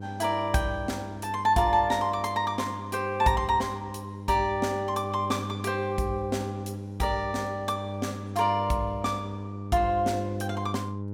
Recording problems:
hum; 50 Hz, harmonics up to 600 Hz, SNR 9 dB

